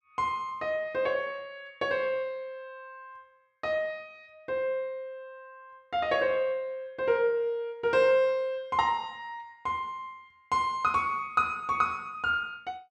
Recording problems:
none

